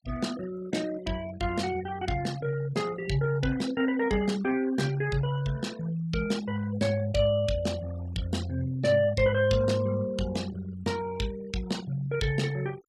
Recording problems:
denoising artefacts; signal-to-artefact ratio 18 dB

